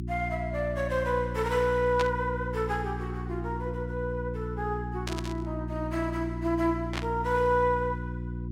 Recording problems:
hum; 60 Hz, harmonics up to 360 Hz, SNR 5 dB
static burst; at 2 s, at 5 s and at 7 s; peak +1 dB vs average level

